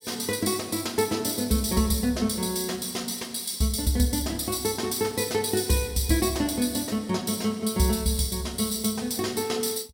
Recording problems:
none

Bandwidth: 16.5 kHz